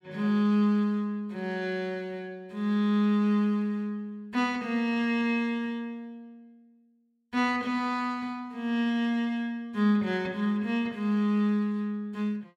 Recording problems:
none

